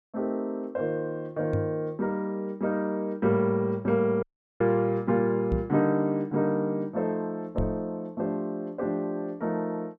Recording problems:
microphone thump; at 1.5 s, at 5.5 s and at 7.5 s; peak +3 dB vs average level
audio cutting out; at 4 s

